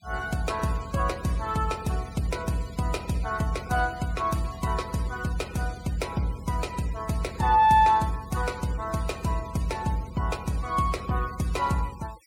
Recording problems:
denoising artefacts; signal-to-artefact ratio 19 dB

